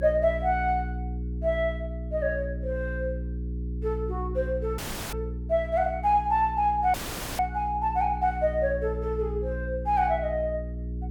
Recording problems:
hum; 60 Hz, harmonics up to 420 Hz, SNR 7 dB
audio cutting out; at 5 s and at 7 s

